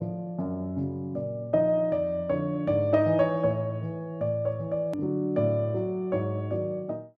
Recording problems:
edit click; at 5 s

